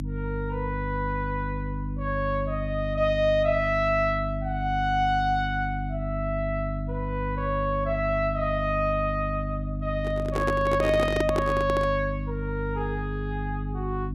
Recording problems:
mains hum; 50 Hz, harmonics up to 300 Hz, SNR 4 dB
microphone handling noise; from 10 to 12 s; peak +4 dB vs average level

